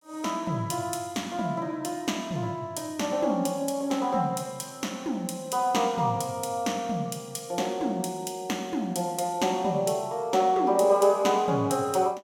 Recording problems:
none

